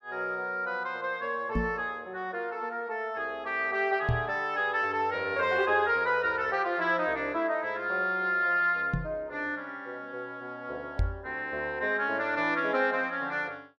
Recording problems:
microphone thump; 4 times, first at 1.5 s; peak +4 dB vs average level

